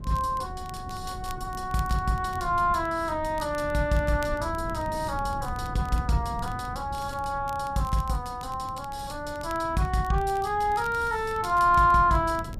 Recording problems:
wind noise; below 160 Hz, SNR 13 dB
crackle; vinyl, SNR 25 dB

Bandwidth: 15 kHz